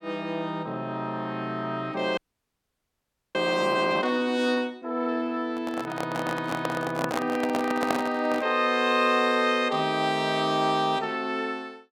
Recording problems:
frozen audio; at 2 s for 1 s
handling noise; from 5.5 to 8.5 s; peak +3 dB vs average level

